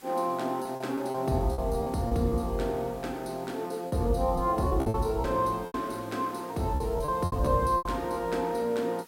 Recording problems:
hiss; slope -1 dB per octave, SNR 23 dB
packet loss; 9% of the sound replaced, filled with repeated pitch periods

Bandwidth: 16 kHz